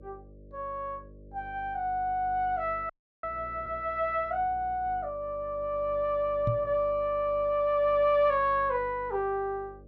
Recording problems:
hum; 50 Hz, harmonics up to 600 Hz, SNR 20 dB
frozen audio; at 3 s
microphone bump; at 6.5 s; peak +2 dB vs average level

